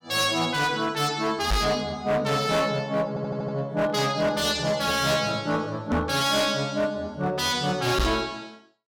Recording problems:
distortion; hard clipping, signal-to-distortion ratio 7 dB
microphone thump; at 1.5 s, at 6 s and at 8 s; peak +3 dB vs average level
stutter; at 3 s

